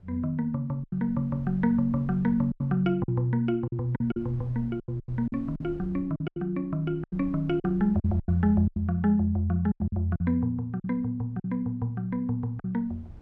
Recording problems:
wind noise; below 140 Hz, SNR 20 dB
packet loss; 10% of the sound replaced, filled with silence

